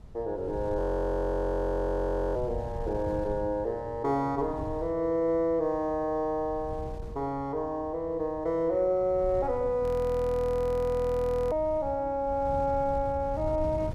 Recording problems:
wind on the microphone; below 130 Hz, SNR 12 dB
audio freezing; at 1 s for 1.5 s and at 10 s for 1.5 s

